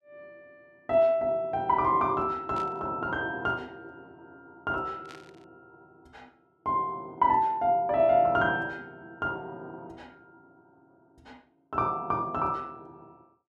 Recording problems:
static burst; at 2.5 s and at 5 s; peak -15 dB vs average level

